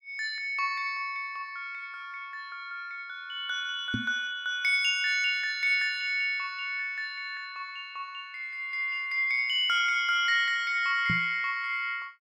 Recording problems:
microphone bump; at 4 s and at 11 s; peak 0 dB vs average level

